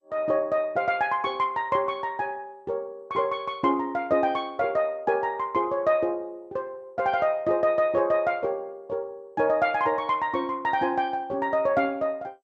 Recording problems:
codec artefacts; MP2, log-spectral distance 2 dB

